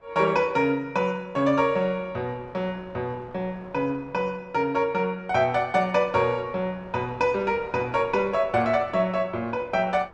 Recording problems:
wind noise; below 1.1 kHz, SNR 23 dB

